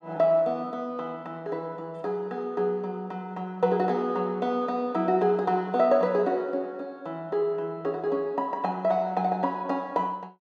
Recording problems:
none

